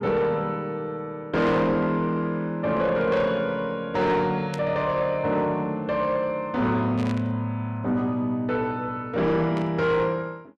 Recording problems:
distortion; soft clipping, signal-to-distortion ratio 11 dB
static burst; at 4.5 s, at 7 s and at 9.5 s; peak -9 dB vs average level

